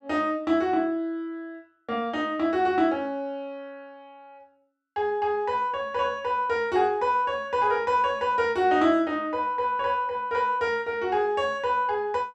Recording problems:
none

